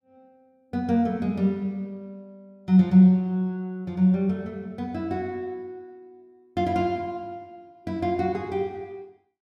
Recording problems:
none

